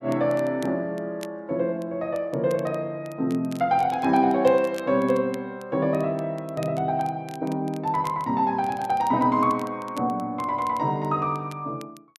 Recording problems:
crackling; vinyl, SNR 25 dB

